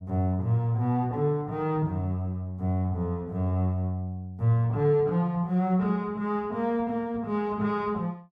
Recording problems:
none

